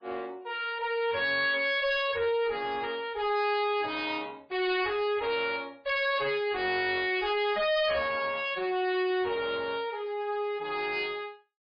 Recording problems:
codec artefacts; MP3, log-spectral distance 3 dB, nothing above 5 kHz
distorted audio; hard clipping, uneven, signal-to-distortion ratio 7 dB

